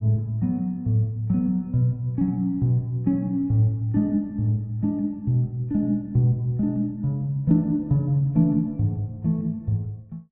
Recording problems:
none

